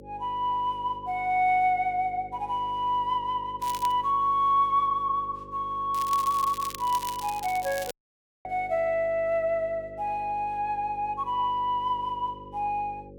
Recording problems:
hum; 50 Hz, harmonics up to 550 Hz, SNR 20 dB
crackle; at 3.5 s and from 6 to 8 s; loose cable, SNR 14 dB
dropout; at 8 s for 0.5 s

